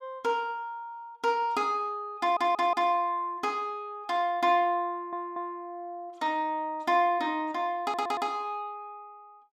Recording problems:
stutter; at 2 s, at 5 s and at 8 s

